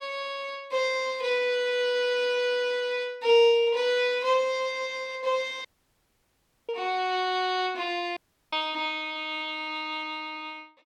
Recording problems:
dropout; at 5.5 s for 1 s and at 8 s

